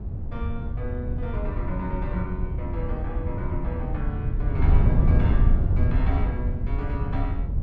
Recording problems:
wind noise; below 98 Hz, SNR -8 dB

